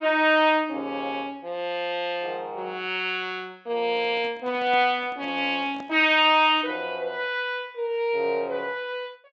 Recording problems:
low-pass filter; nothing above 8 kHz
handling noise; from 4 to 6 s; peak -12 dB vs average level

